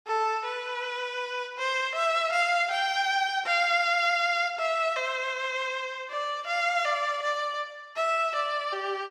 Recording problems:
none

